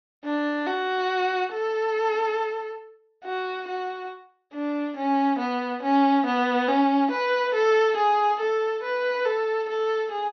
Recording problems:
treble cut off; nothing above 6.3 kHz

